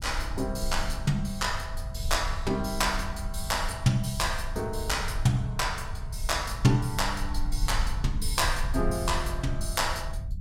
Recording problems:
rumble; below 66 Hz, SNR 6 dB

